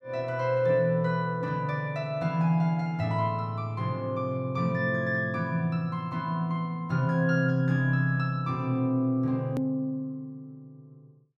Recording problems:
hard cut with a click; at 9.5 s

